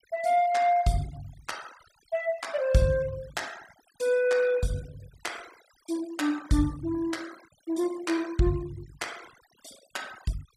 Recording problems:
noise reduction artefacts; signal-to-artefact ratio 20 dB

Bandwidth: 15.5 kHz